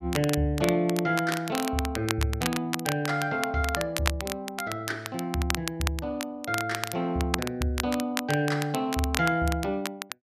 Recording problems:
crackle; vinyl, SNR 6 dB

